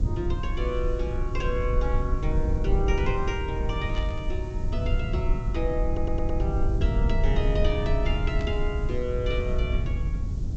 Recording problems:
low-pass filter; nothing above 8 kHz
background hiss; SNR 25 dB
low-frequency rumble; below 78 Hz, SNR -3 dB
static burst; at 4 s and at 8.5 s; peak -8 dB vs average level
stutter; at 6 s

